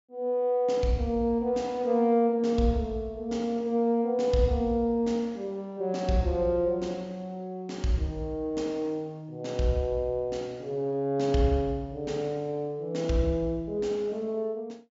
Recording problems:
treble missing; nothing above 7.3 kHz

